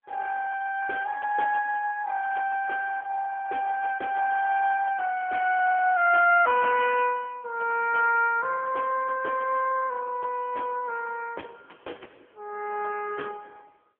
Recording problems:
phone line; 370 Hz to 3.3 kHz, AMR-NB

